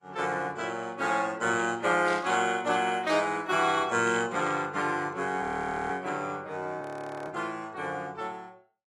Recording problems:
lossy codec; AAC, log-spectral distance 3 dB
static burst; at 2 s; peak -7 dB vs average level
audio freezing; at 5.5 s and at 7 s

